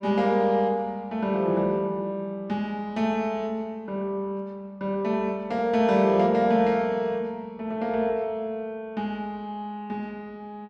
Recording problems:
none

